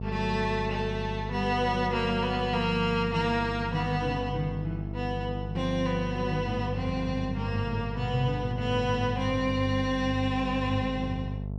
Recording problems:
hum; 50 Hz, harmonics up to 700 Hz, SNR 6 dB

